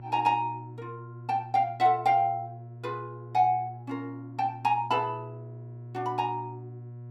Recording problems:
hum; 60 Hz, harmonics up to 720 Hz, SNR 15 dB

